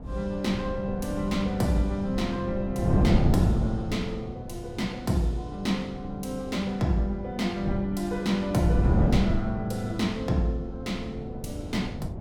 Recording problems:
wind noise; below 220 Hz, SNR 2 dB

